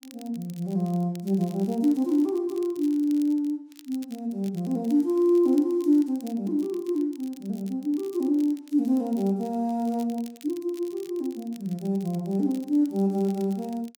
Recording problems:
crackling; vinyl, SNR 26 dB

